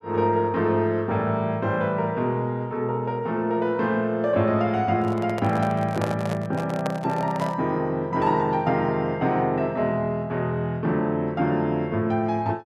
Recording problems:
microphone handling noise; from 5 to 7.5 s; peak -1 dB vs average level

